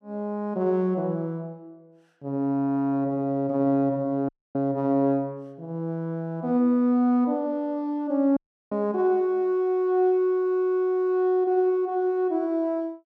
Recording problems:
dropout; at 4.5 s and at 8.5 s

